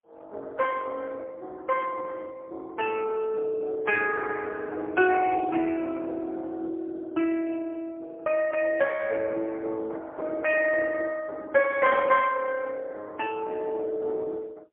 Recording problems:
phone line; 280 Hz to 3.1 kHz, AMR-NB, then MP3

